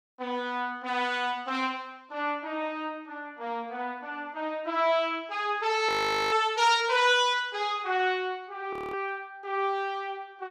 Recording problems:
frozen audio; at 6 s and at 8.5 s

